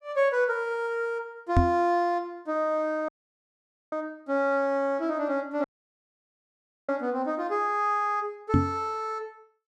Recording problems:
knock on the microphone; at 1.5 s and at 8.5 s; peak +9 dB vs average level
dropout; at 3 s for 1 s and at 5.5 s for 1 s

